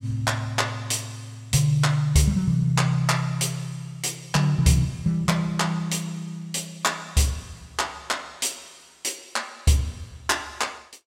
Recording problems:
none

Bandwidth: 16.5 kHz